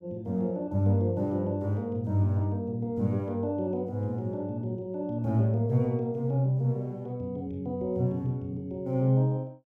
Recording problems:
none

